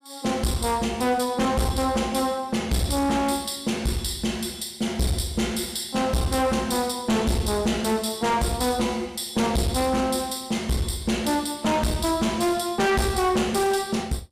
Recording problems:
distorted audio; hard clipping, uneven, signal-to-distortion ratio 7 dB

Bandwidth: 15 kHz